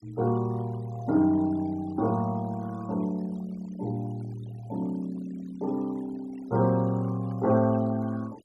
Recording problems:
noise reduction artefacts; signal-to-artefact ratio 21 dB

